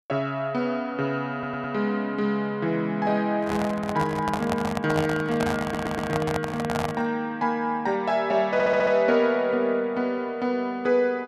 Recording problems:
stutter; at 1.5 s, at 5.5 s and at 8.5 s
microphone handling noise; from 3.5 to 7 s; peak +1 dB vs average level

